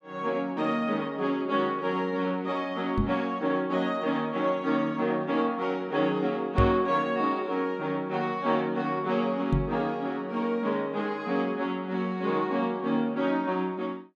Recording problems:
microphone thump; at 3 s, at 6.5 s and at 9.5 s; peak +6 dB vs average level

